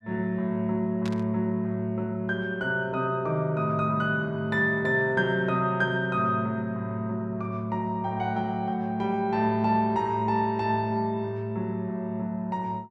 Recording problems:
static burst; at 1 s; peak -9 dB vs average level

